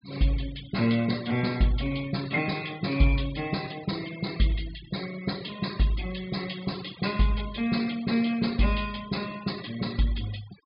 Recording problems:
low-pass filter; nothing above 5.1 kHz
denoising artefacts; signal-to-artefact ratio 17 dB

